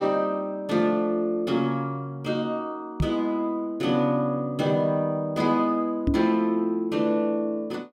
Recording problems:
microphone thump; at 3 s and at 6 s; peak +5 dB vs average level

